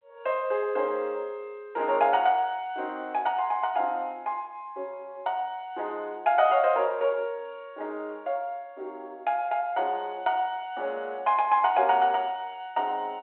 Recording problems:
phone line; 340 Hz to 3.2 kHz, G.726

